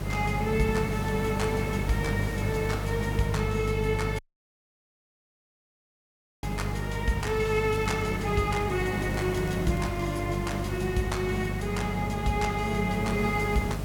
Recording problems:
hum; 50 Hz, harmonics up to 600 Hz, SNR 4 dB
hiss; slope -6 dB per octave, SNR 8 dB
dropout; at 4 s for 2 s
crackling; at 6.5 s and from 7 to 10 s; loose cable, SNR 26 dB

